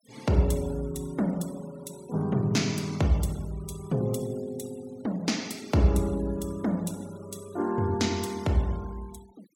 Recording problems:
denoising artefacts; signal-to-artefact ratio 21 dB

